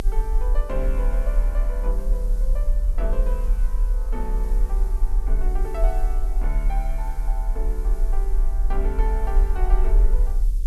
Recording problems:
hum; 50 Hz, harmonics up to 500 Hz, SNR 21 dB
hiss; slope +5 dB per octave, SNR 17 dB
rumble; below 40 Hz, strongest tone 36 Hz, SNR -10 dB

